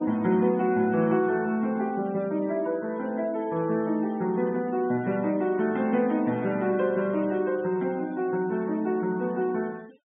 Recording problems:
low-pass filter; nothing above 3.6 kHz
noise reduction artefacts; signal-to-artefact ratio 25 dB

